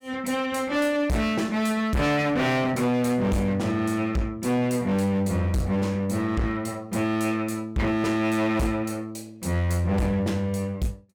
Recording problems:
distorted audio; hard clipping, uneven, signal-to-distortion ratio 7 dB

